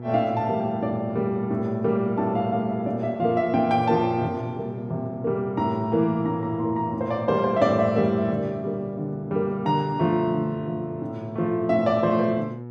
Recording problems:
electrical hum; 60 Hz, harmonics up to 960 Hz, SNR 14 dB

